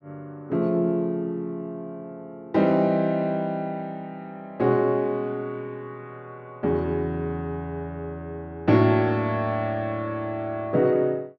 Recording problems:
none

